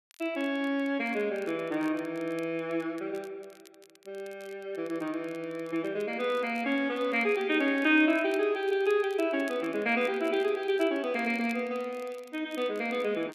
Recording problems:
crackle; vinyl, SNR 27 dB

